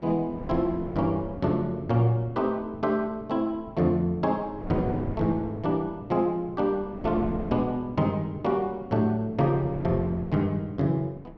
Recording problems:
wind noise; below 410 Hz, SNR 13 dB

